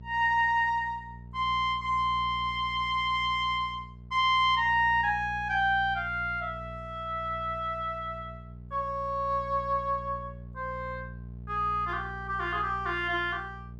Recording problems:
hum; 60 Hz, harmonics up to 480 Hz, SNR 16 dB

